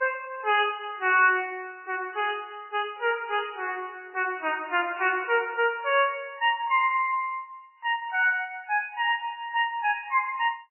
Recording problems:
lossy codec; MP3, log-spectral distance 4 dB, nothing above 2.6 kHz

